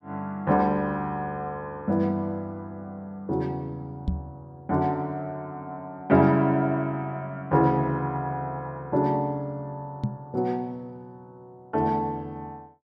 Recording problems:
microphone bump; at 4 s and at 10 s; peak +3 dB vs average level

